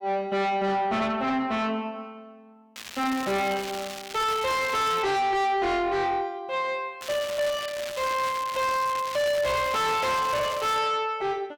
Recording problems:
distorted audio; soft clipping, signal-to-distortion ratio 5 dB
crackling; from 3 to 5 s and from 7 to 11 s; loose cable, SNR 11 dB

